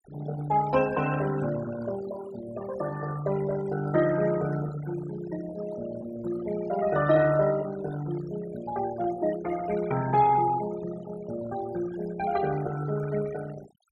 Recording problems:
denoising artefacts; signal-to-artefact ratio 14 dB

